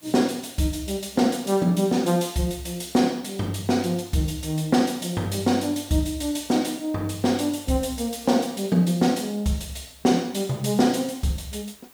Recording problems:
background hiss; slope -2 dB per octave, SNR 27 dB

